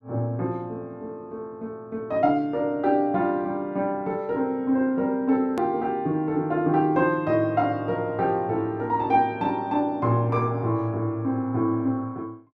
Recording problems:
click at an edit; at 5.5 s

